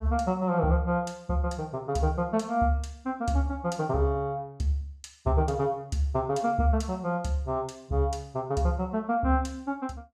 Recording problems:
none

